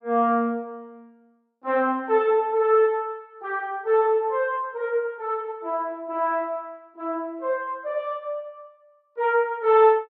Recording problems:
none

